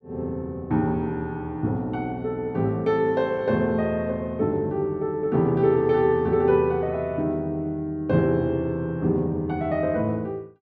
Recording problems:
none

